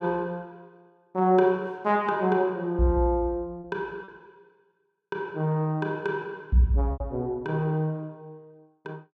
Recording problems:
lost packets; 2% of the sound replaced, filled with repeated pitch periods

